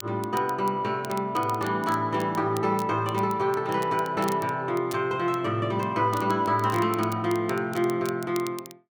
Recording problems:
crackling; vinyl, SNR 19 dB

